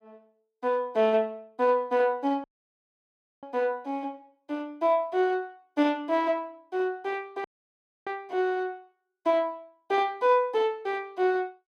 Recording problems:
audio cutting out; at 2.5 s for 1 s and at 7.5 s for 0.5 s

